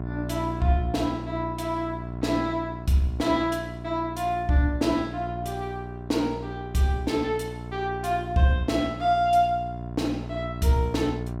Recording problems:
hum; 60 Hz, harmonics up to 1.1 kHz, SNR 9 dB

